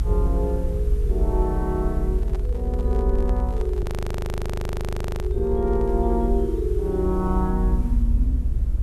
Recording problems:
background hiss; SNR 25 dB
rumble; below 62 Hz, strongest tone 44 Hz, SNR -2 dB
handling noise; from 2 to 6 s; peak -8 dB vs average level
audio freezing; at 4 s for 1.5 s

